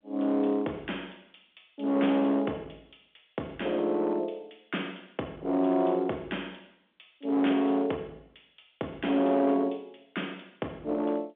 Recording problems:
phone line; 220 Hz to 3.5 kHz, G.711
distortion; hard clipping, uneven, signal-to-distortion ratio 13 dB

